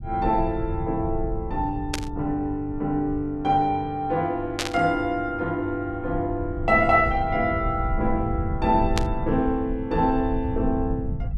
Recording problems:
rumble; below 110 Hz, SNR 8 dB
static burst; at 2 s, at 4.5 s and at 9 s; peak +3 dB vs average level

